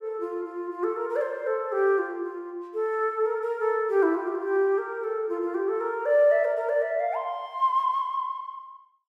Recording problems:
none

